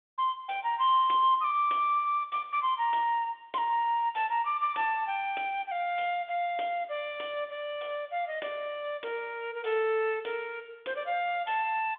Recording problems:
telephone audio; 320 Hz to 3.6 kHz, G.726

